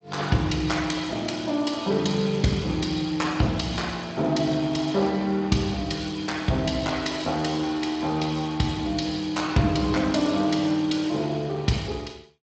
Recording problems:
codec artefacts; Speex, log-spectral distance 6 dB, nothing above 7.6 kHz

